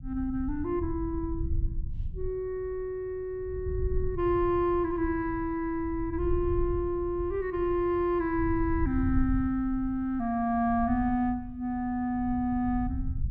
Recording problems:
low-frequency rumble; below 86 Hz, SNR 8 dB

